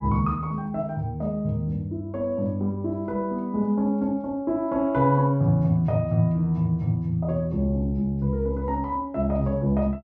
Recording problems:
none

